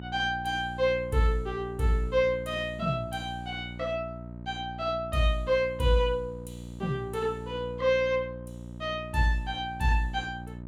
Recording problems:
hum; 60 Hz, harmonics up to 960 Hz, SNR 12 dB

